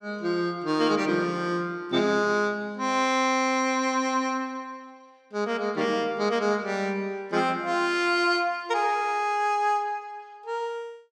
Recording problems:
none

